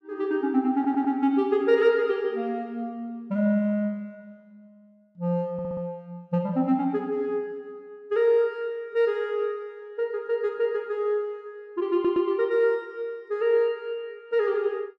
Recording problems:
stutter; at 0.5 s, at 5.5 s and at 12 s

